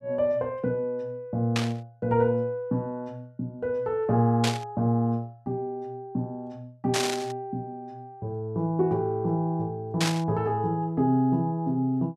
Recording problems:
static burst; 4 times, first at 1.5 s; peak +4 dB vs average level

